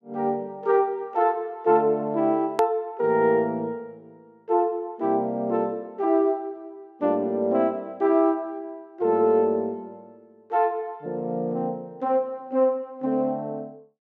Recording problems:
click at an edit; at 2.5 s

